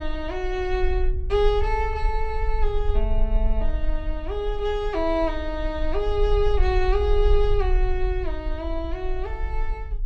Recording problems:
rumble; below 46 Hz, SNR 2 dB

